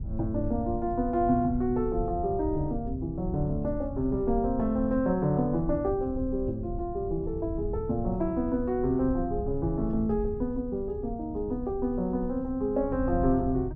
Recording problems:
rumble; below 96 Hz, SNR 9 dB

